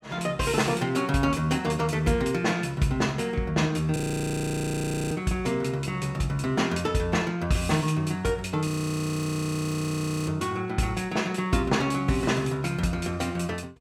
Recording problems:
audio freezing; at 4 s for 1 s and at 8.5 s for 1.5 s

